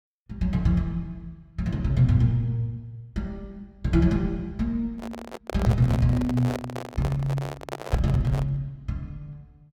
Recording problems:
microphone handling noise; from 5 to 8.5 s; peak -2 dB vs average level

